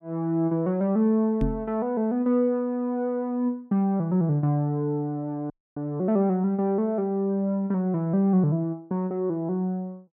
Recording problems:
microphone thump; at 1.5 s; peak +2 dB vs average level
dropout; at 5.5 s

